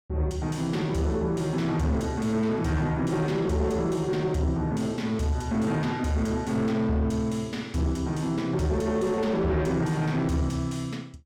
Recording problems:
distorted audio; soft clipping, signal-to-distortion ratio 11 dB

